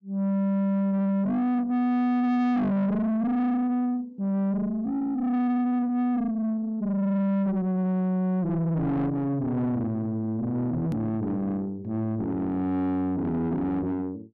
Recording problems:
low-pass filter; nothing above 8 kHz
distorted audio; soft clipping, signal-to-distortion ratio 6 dB
edit click; at 11 s

